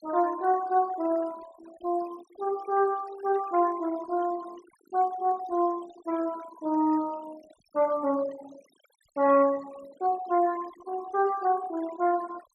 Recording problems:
noise reduction artefacts; signal-to-artefact ratio 20 dB

